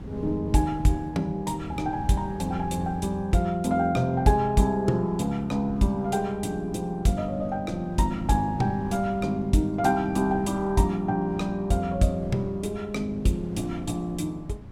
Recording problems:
wind noise; below 220 Hz, SNR 15 dB

